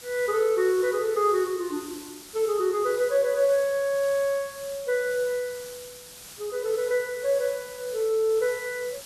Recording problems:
background hiss; slope +1 dB per octave, SNR 16 dB

